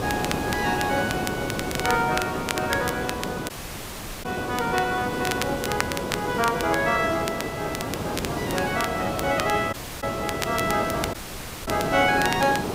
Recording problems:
background hiss; SNR 4 dB
crackle; vinyl, SNR 8 dB
dropout; at 3.5 s for 1 s, at 9.5 s and at 11 s for 0.5 s

